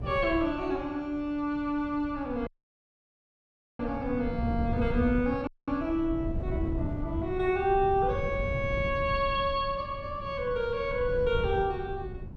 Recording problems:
wind on the microphone; below 140 Hz, SNR 7 dB
dropout; at 2.5 s for 1.5 s and at 5.5 s

